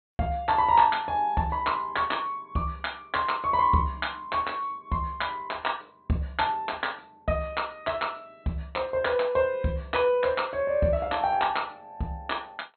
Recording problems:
treble missing; nothing above 4.2 kHz

